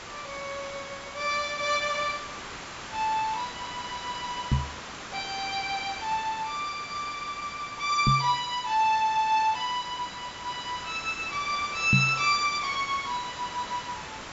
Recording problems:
low-pass filter; nothing above 8 kHz
background hiss; SNR 11 dB
knock on the microphone; at 4.5 s, at 8 s and at 12 s; peak +9 dB vs average level

